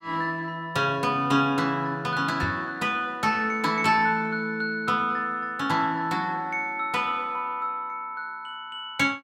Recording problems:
microphone thump; at 2.5 s; peak 0 dB vs average level

